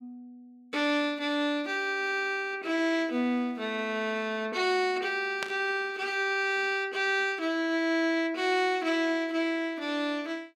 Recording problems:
static burst; at 5.5 s; peak -2 dB vs average level

